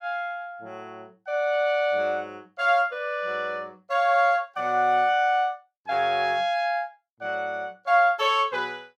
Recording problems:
none

